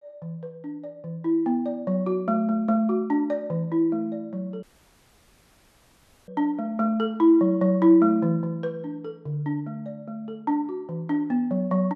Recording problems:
audio cutting out; at 4.5 s for 1.5 s

